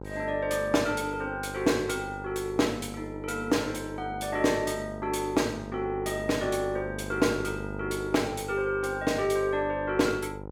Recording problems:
hum; 50 Hz, harmonics up to 1.4 kHz, SNR 11 dB

